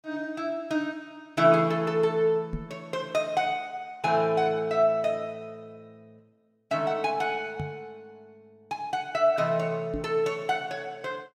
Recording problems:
microphone thump; at 2.5 s, at 7.5 s and at 10 s; peak -3 dB vs average level

